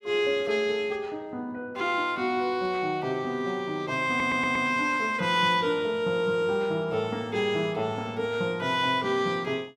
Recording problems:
stutter; at 4 s

